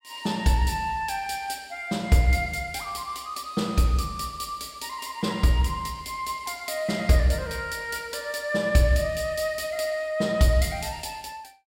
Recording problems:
none

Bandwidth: 16 kHz